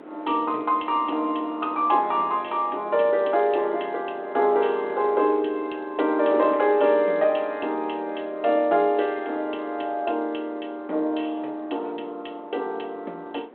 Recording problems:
phone line; 260 Hz to 3.6 kHz, G.726
wind noise; below 690 Hz, SNR 20 dB

